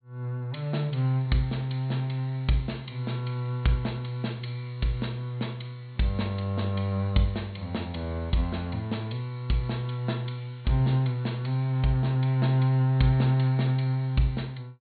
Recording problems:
low-pass filter; nothing above 4.4 kHz

